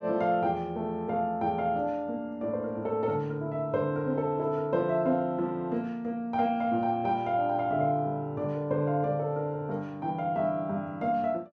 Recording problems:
none

